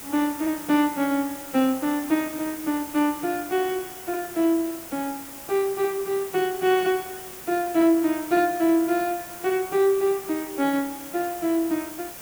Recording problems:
background hiss; slope -3 dB per octave, SNR 13 dB

